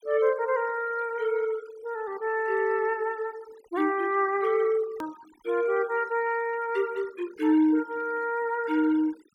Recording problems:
noise reduction artefacts; signal-to-artefact ratio 24 dB
edit click; at 5 s

